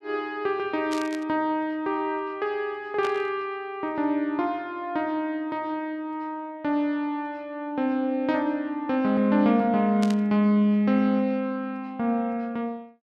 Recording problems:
burst of static; at 1 s, at 3 s and at 10 s; peak -6 dB vs average level

